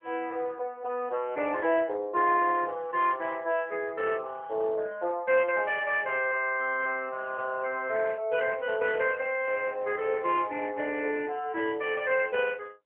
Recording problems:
telephone audio; 300 Hz to 3.3 kHz, AMR-NB

